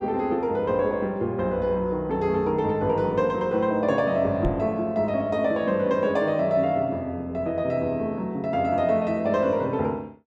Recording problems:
knock on the microphone; at 4.5 s; peak 0 dB vs average level

